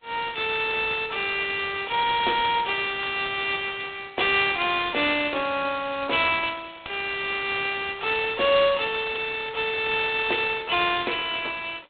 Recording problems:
telephone audio; 300 Hz to 3.9 kHz, G.726

